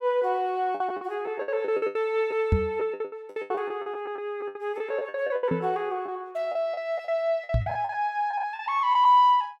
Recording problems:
packet loss; 15% of the sound replaced, filled with the last packet
microphone thump; at 2.5 s, at 5.5 s and at 7.5 s; peak +7 dB vs average level

